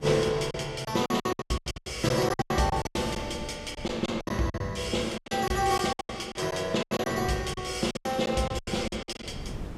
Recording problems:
wind on the microphone; below 300 Hz, SNR 17 dB
packet loss; 19% of the sound replaced, filled with silence

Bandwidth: 15.5 kHz